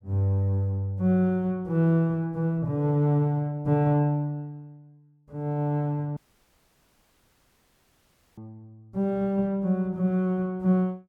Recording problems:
audio cutting out; at 6 s for 2 s

